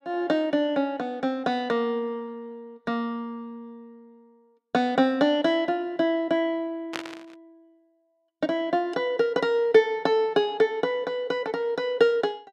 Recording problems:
static burst; at 7 s; peak -2 dB vs average level

